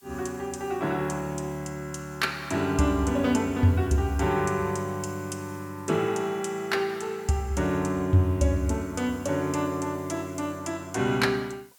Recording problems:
background hiss; SNR 27 dB

